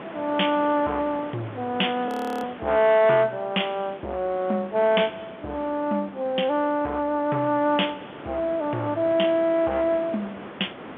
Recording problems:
telephone audio; 240 Hz to 3.4 kHz, G.711
distortion; hard clipping, signal-to-distortion ratio 12 dB
hiss; SNR 18 dB
wind noise; below 1.1 kHz, SNR 21 dB
frozen audio; at 2 s

